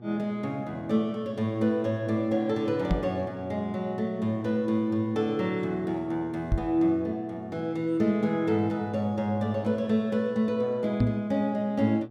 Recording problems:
mains hum; 60 Hz, harmonics up to 1.2 kHz, SNR 19 dB
knock on the microphone; at 3 s, at 6.5 s and at 11 s; peak +6 dB vs average level

